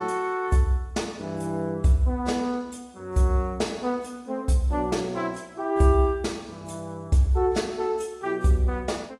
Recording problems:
lossy codec; AAC, log-spectral distance 2 dB, nothing above 11 kHz

